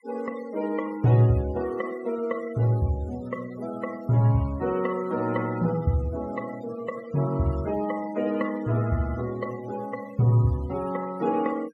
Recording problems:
noise reduction artefacts; signal-to-artefact ratio 18 dB

